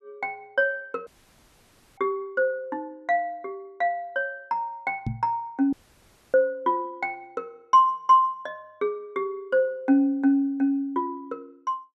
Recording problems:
audio cutting out; at 1 s for 1 s and at 5.5 s for 0.5 s
knock on the microphone; at 5 s; peak 0 dB vs average level

